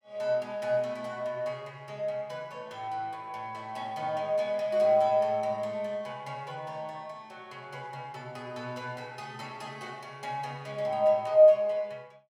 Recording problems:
none

